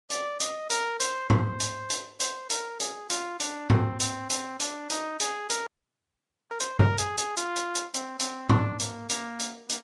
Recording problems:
lossy compression; Vorbis, log-spectral distance 4 dB, nothing above 11 kHz
audio freezing; at 5.5 s for 1 s

